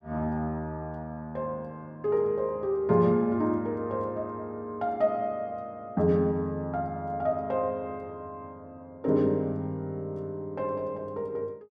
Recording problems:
none

